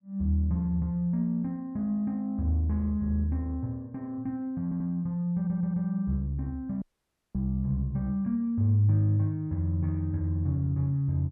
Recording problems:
stutter; at 4.5 s and at 5.5 s
dropout; at 7 s for 0.5 s

